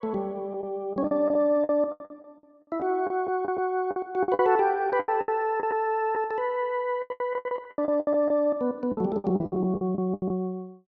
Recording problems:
packet loss; 17% of the sound replaced, filled with the last packet

